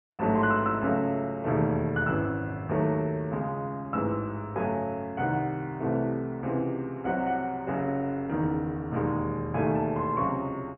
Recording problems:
treble cut off; nothing above 3 kHz

